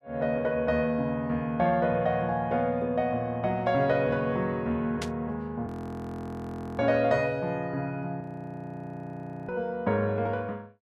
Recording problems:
burst of static; at 5 s; peak -2 dB vs average level
audio freezing; at 5.5 s for 1 s and at 8 s for 1.5 s

